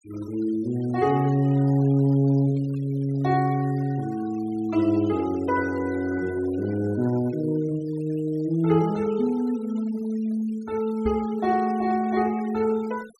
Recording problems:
denoising artefacts; signal-to-artefact ratio 23 dB
microphone bump; at 11 s; peak -4 dB vs average level

